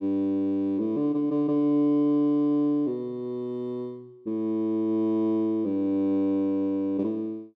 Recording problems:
none

